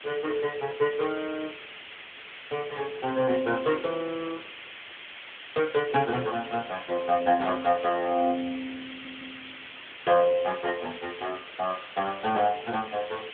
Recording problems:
telephone audio; 190 Hz to 3.4 kHz, AMR-NB
background hiss; SNR 13 dB
audio stuttering; at 9 s

